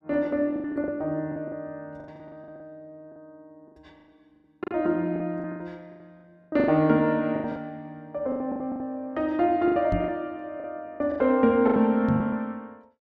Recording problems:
packet loss; 16% of the sound replaced, filled with the last packet
microphone bump; at 10 s and at 12 s; peak +2 dB vs average level

